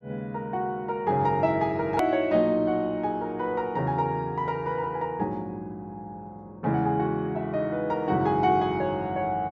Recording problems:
low-pass filter; nothing above 7.5 kHz
click at an edit; at 2 s

